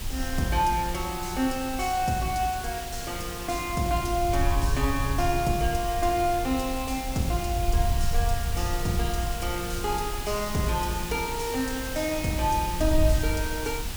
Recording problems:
background hiss; slope -1 dB per octave, SNR 8 dB
wind on the microphone; below 78 Hz, SNR 5 dB

